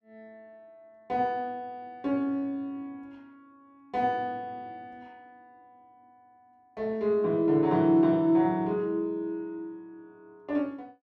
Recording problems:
none

